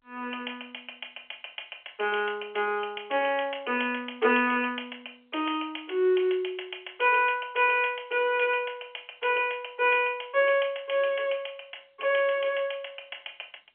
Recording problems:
telephone audio; 280 Hz to 3.3 kHz, G.711

